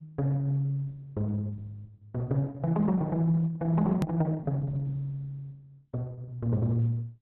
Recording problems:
codec artefacts; Opus, log-spectral distance 2 dB, nothing above 13.1 kHz
click at an edit; at 4 s

